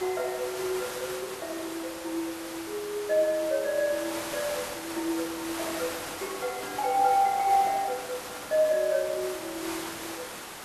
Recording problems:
hiss; slope -3 dB per octave, SNR 8 dB

